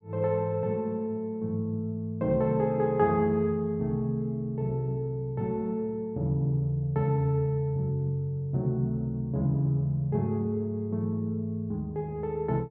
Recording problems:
none

